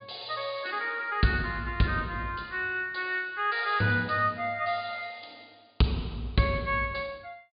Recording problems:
low-pass filter; nothing above 4.7 kHz

